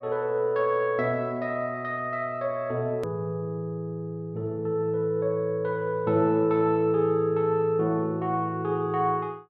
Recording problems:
click at an edit; at 3 s

